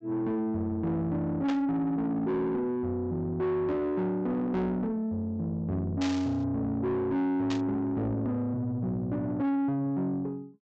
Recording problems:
treble missing; nothing above 8 kHz
distorted audio; soft clipping, signal-to-distortion ratio 10 dB
static burst; at 1.5 s, at 6 s and at 7.5 s; peak -4 dB vs average level

